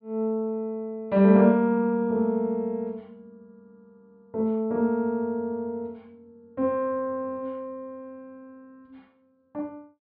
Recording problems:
treble missing; nothing above 4.7 kHz

